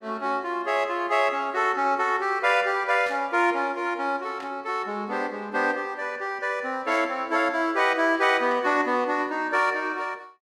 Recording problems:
burst of static; 4 times, first at 3 s; peak -14 dB vs average level

